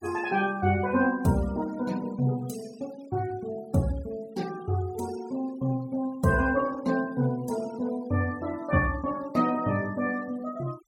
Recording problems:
denoising artefacts; signal-to-artefact ratio 21 dB

